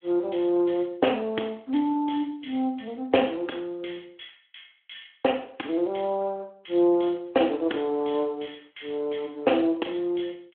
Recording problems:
phone line; 260 Hz to 3.3 kHz, Speex

